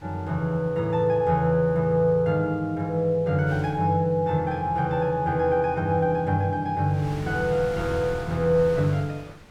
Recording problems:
wind noise; below 1.2 kHz, SNR 20 dB

